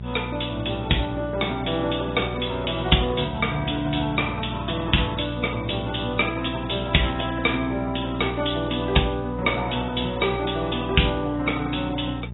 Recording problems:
codec artefacts; AAC, log-spectral distance 9 dB, nothing above 3.8 kHz
electrical hum; 60 Hz, harmonics up to 600 Hz, SNR 9 dB

